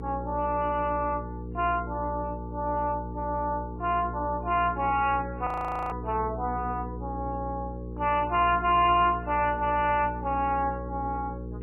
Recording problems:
lossy codec; MP3, log-spectral distance 2 dB, nothing above 2.5 kHz
distorted audio; hard clipping, uneven, signal-to-distortion ratio 11 dB
mains hum; 60 Hz, harmonics up to 480 Hz, SNR 9 dB
frozen audio; at 5.5 s

